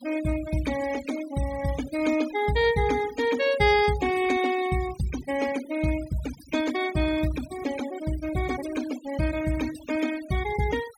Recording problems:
denoising artefacts; signal-to-artefact ratio 13 dB

